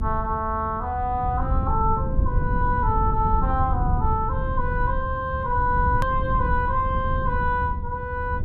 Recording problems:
rumble; below 110 Hz, SNR 2 dB
edit click; at 6 s

